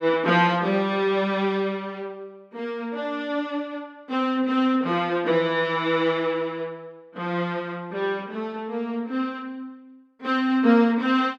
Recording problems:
none

